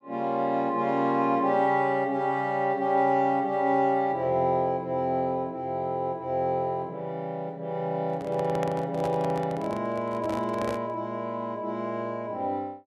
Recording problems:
handling noise; from 8 to 11 s; peak -4 dB vs average level

